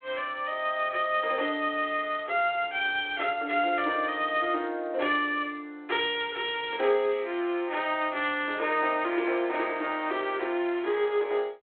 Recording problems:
telephone audio; 300 Hz to 3.4 kHz, G.726

